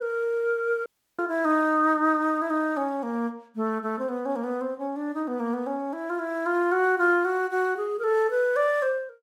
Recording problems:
dropout; at 1 s

